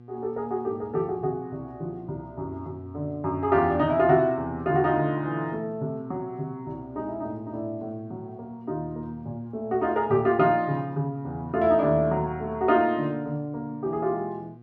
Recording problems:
mains hum; 60 Hz, harmonics up to 840 Hz, SNR 22 dB

